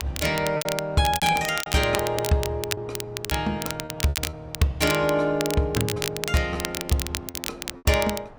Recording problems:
wind noise; below 880 Hz, SNR 23 dB
crackling; vinyl, SNR 7 dB
packet loss; 9% of the sound replaced, filled with repeated pitch periods

